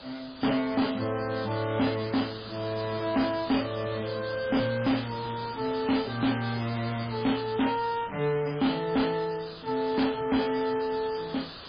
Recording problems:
lossy compression; MP3, log-spectral distance 19 dB
distortion; hard clipping, signal-to-distortion ratio 10 dB
background hiss; SNR 13 dB

